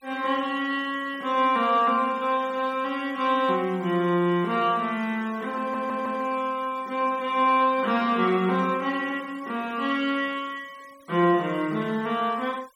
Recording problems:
denoising artefacts; signal-to-artefact ratio 26 dB
audio stuttering; at 5.5 s

